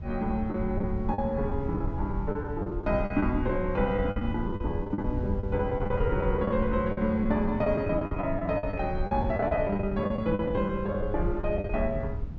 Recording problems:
treble cut off; nothing above 8 kHz
low-frequency rumble; below 100 Hz, SNR 6 dB
lost packets; 13% of the sound replaced, filled with the last packet

